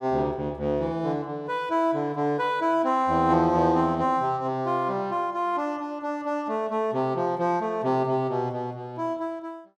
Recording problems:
none

